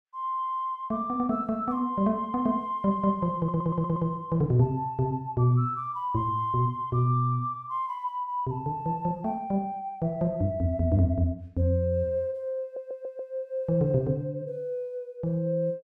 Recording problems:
audio stuttering; at 3.5 s and at 13 s

